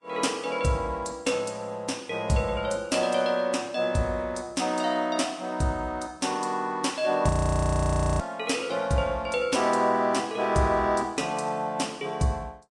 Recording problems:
lossy codec; Vorbis, log-spectral distance 3 dB, nothing above 10.1 kHz
audio freezing; at 7.5 s for 1 s

